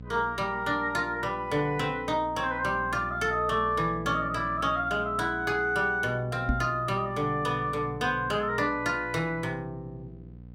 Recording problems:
hum; 60 Hz, harmonics up to 540 Hz, SNR 17 dB
microphone bump; at 6.5 s; peak +4 dB vs average level

